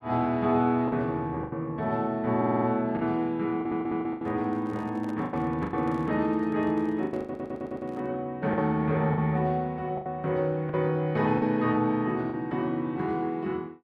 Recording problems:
packet loss; 7% of the sound replaced, filled with the last packet
audio stuttering; at 2.5 s, at 3.5 s and at 7 s
handling noise; from 4 to 8 s; peak -11 dB vs average level

